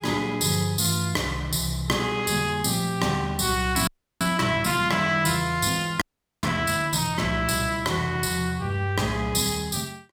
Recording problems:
frozen audio; at 4 s and at 6 s

